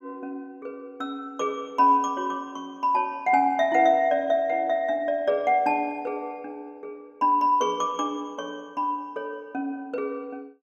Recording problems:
none

